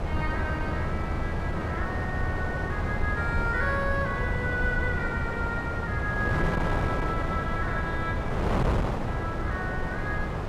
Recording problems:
low-frequency rumble; below 84 Hz, strongest tone 80 Hz, SNR 5 dB
wind noise; below 630 Hz, SNR -1 dB

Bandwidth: 14 kHz